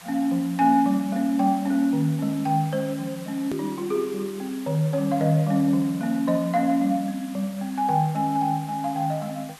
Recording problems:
hiss; SNR 20 dB
edit click; at 3.5 s

